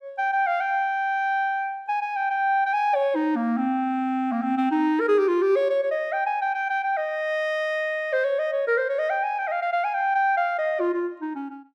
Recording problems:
none

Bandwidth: 13.5 kHz